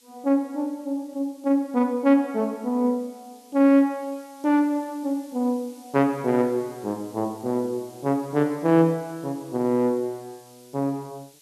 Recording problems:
background hiss; SNR 27 dB

